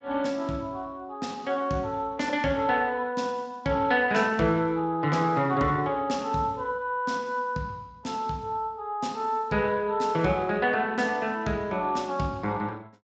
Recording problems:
codec artefacts; Speex, log-spectral distance 3 dB, nothing above 7.6 kHz

